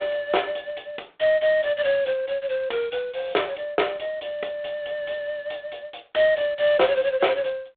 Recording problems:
telephone audio; 300 Hz to 3.6 kHz, G.726

